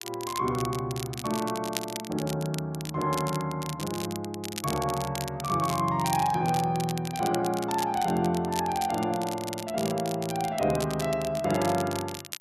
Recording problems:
crackle; vinyl, SNR 10 dB

